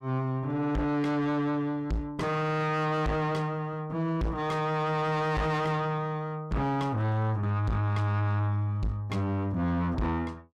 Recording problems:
distortion; soft clipping, signal-to-distortion ratio 6 dB

